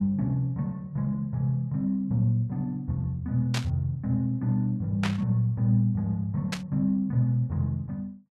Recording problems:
static burst; at 3.5 s, at 5 s and at 6.5 s; peak -1 dB vs average level

